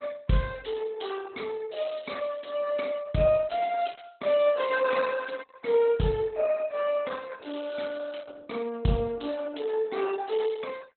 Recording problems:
lossy codec; Opus, log-spectral distance 5 dB, nothing above 4 kHz

